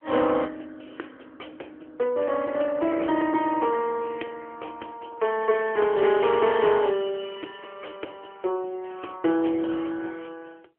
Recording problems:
telephone audio; 280 Hz to 3.2 kHz, AMR-NB

